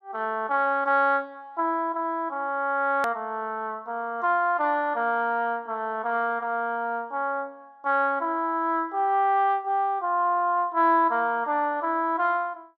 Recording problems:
hard cut with a click; at 3 s

